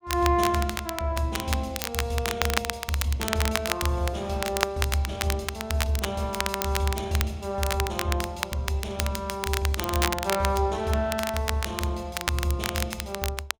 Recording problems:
crackling; vinyl, SNR 3 dB

